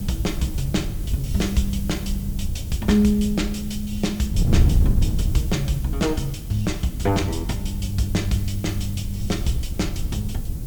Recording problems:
background hiss; slope +1 dB per octave, SNR 16 dB
wind on the microphone; below 120 Hz, SNR 2 dB

